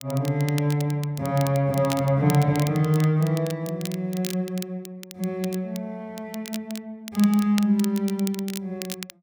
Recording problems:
crackle; vinyl, SNR 14 dB

